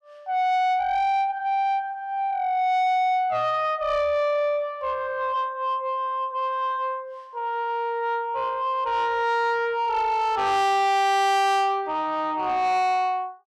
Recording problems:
distorted audio; soft clipping, signal-to-distortion ratio 7 dB

